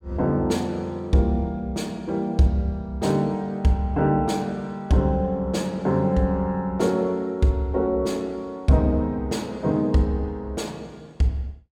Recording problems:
none

